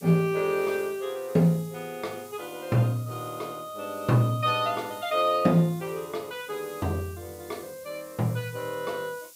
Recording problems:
hiss; SNR 20 dB

